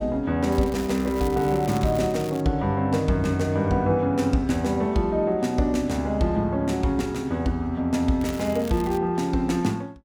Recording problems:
crackle; from 0.5 to 2.5 s and at 8 s; loose cable, SNR 19 dB

